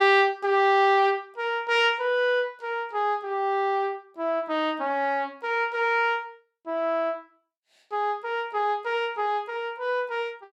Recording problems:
none

